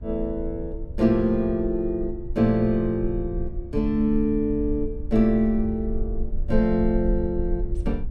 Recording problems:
low-frequency rumble; below 58 Hz, SNR 9 dB

